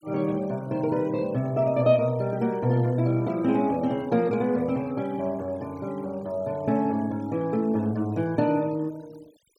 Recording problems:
noise reduction artefacts; signal-to-artefact ratio 26 dB

